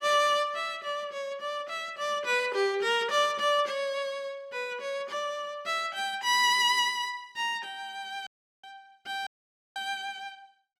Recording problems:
dropout; at 8.5 s and at 9.5 s

